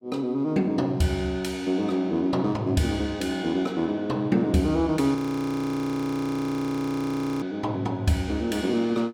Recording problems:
audio freezing; at 5 s for 2.5 s

